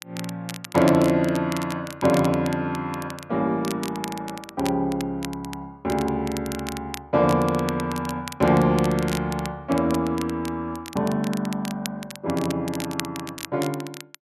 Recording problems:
crackling; vinyl, SNR 14 dB

